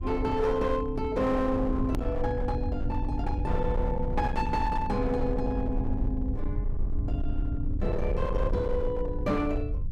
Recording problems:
distorted audio; hard clipping, signal-to-distortion ratio 11 dB
low-frequency rumble; below 80 Hz, SNR 3 dB
edit click; at 2 s

